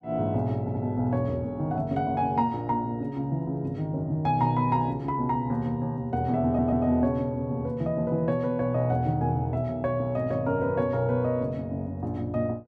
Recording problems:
stutter; at 0.5 s and at 6.5 s

